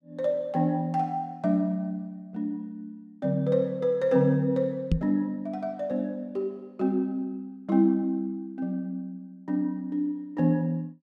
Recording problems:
microphone bump; at 5 s; peak +7 dB vs average level

